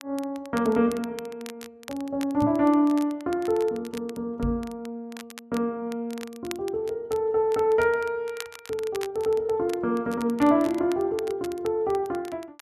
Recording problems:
crackling; vinyl, SNR 19 dB
microphone bump; at 2.5 s and at 4.5 s; peak -1 dB vs average level

